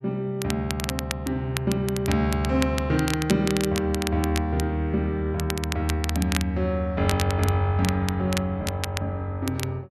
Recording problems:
crackling; vinyl, SNR 9 dB

